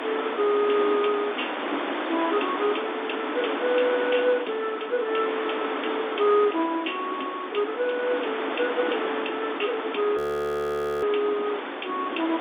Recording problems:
telephone audio; 240 Hz to 3.6 kHz, G.711
hiss; SNR 4 dB
wind on the microphone; below 470 Hz, SNR 20 dB
frozen audio; at 10 s for 1 s
crackle; at 11 s; loose cable, SNR 27 dB

